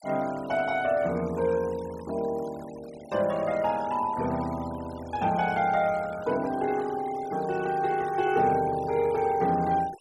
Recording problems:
noise reduction artefacts; signal-to-artefact ratio 19 dB

